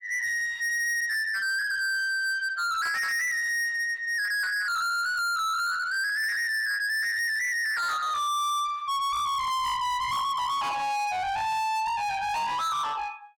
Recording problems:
distortion; soft clipping, signal-to-distortion ratio 6 dB

